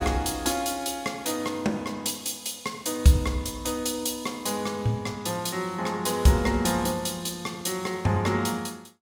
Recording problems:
none

